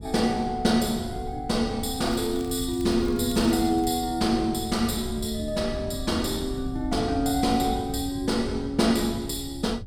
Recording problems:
wind noise; below 120 Hz, SNR 12 dB
crackling; from 2 to 4 s; loose cable, SNR 24 dB

